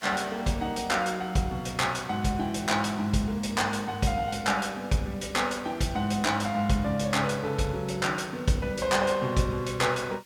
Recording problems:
hiss; SNR 27 dB

